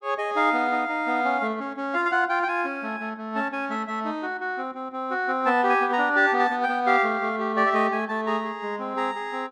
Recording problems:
none

